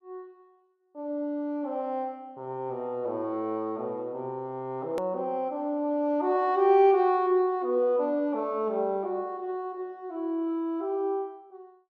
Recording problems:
hard cut with a click; at 5 s

